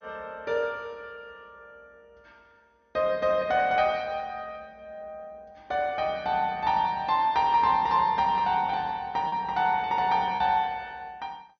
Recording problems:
lossy compression; MP2, log-spectral distance 2 dB, nothing above 5.8 kHz
packet loss; 0.8% of the sound replaced, filled with repeated pitch periods

